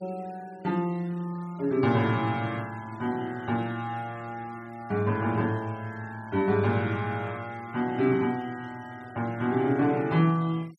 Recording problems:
noise reduction artefacts; signal-to-artefact ratio 25 dB

